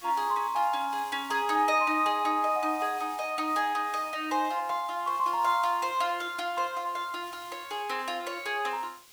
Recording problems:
background hiss; slope +1 dB per octave, SNR 21 dB

